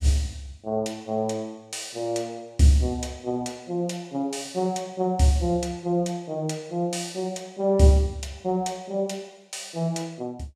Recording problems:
none

